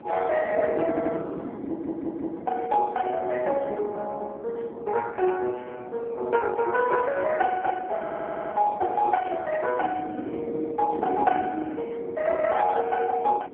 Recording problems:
phone line; 260 Hz to 2.2 kHz, AMR-NB
wind noise; below 430 Hz, SNR 11 dB
stutter; at 1 s, at 1.5 s and at 8 s

